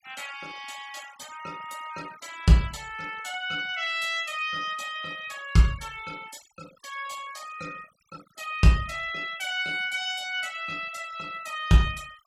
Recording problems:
denoising artefacts; signal-to-artefact ratio 21 dB

